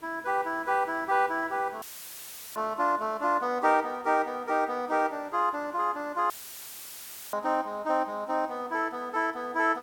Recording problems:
hiss; slope -5 dB per octave, SNR 27 dB
audio cutting out; at 2 s for 0.5 s and at 6.5 s for 1 s; filled with static

